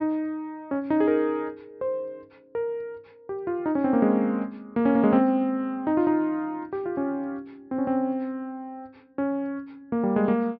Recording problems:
treble missing; nothing above 5.5 kHz

